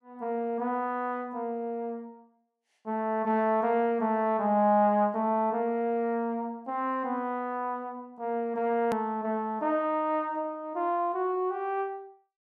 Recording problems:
hard cut with a click; at 9 s

